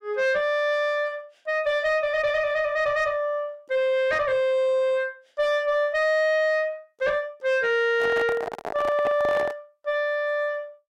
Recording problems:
distortion; soft clipping, signal-to-distortion ratio 11 dB
handling noise; from 8 to 9.5 s; peak -2 dB vs average level

